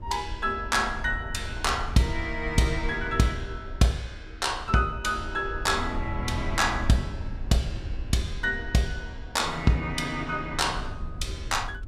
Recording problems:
rumble; below 82 Hz, SNR 11 dB

